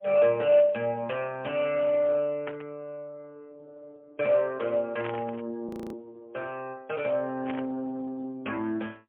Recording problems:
phone line; 190 Hz to 3.1 kHz, AMR-NB, then MP3
static burst; at 2.5 s, at 5 s and at 7.5 s; peak -6 dB vs average level
frozen audio; at 5.5 s

